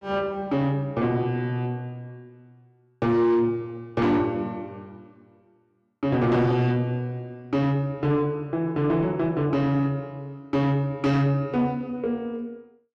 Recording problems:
distorted audio; soft clipping, signal-to-distortion ratio 11 dB

